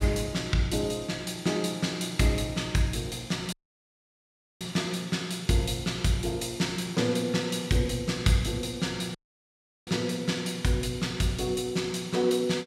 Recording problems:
audio cutting out; at 3.5 s for 1 s and at 9 s for 0.5 s

